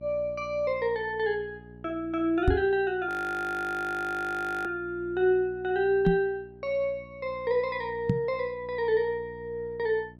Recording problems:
hum; 60 Hz, harmonics up to 720 Hz, SNR 21 dB
microphone bump; at 2.5 s, at 6 s and at 8 s; peak +7 dB vs average level
frozen audio; at 3 s for 1.5 s

